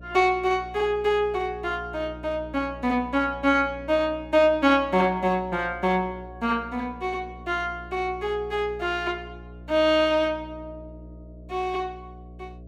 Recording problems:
hum; 60 Hz, harmonics up to 660 Hz, SNR 19 dB

